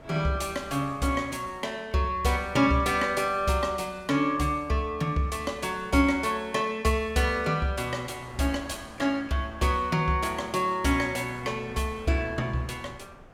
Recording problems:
wind on the microphone; below 1 kHz, SNR 23 dB

